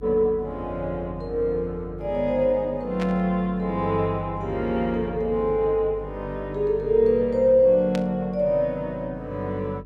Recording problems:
hum; 50 Hz, harmonics up to 400 Hz, SNR 18 dB
static burst; at 3 s and at 8 s; peak -7 dB vs average level

